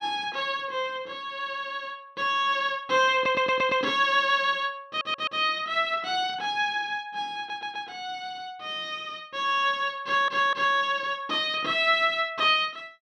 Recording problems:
stutter; 4 times, first at 3 s

